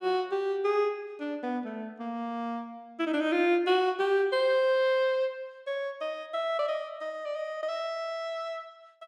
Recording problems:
none

